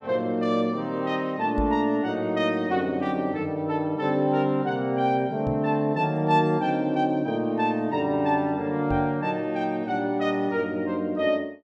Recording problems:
knock on the microphone; at 1.5 s, at 5.5 s and at 9 s; peak -1 dB vs average level

